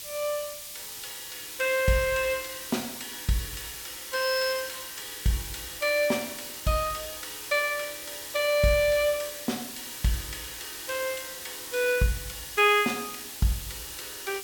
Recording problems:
background hiss; SNR 9 dB

